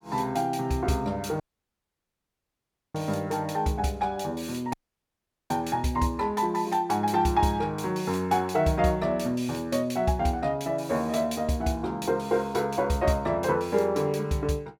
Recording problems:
audio cutting out; at 1.5 s for 1.5 s and at 4.5 s for 1 s

